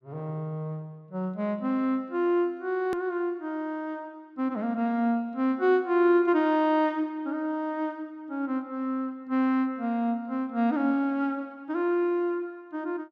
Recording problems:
hard cut with a click; at 3 s

